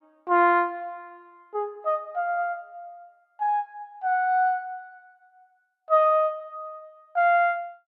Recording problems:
none

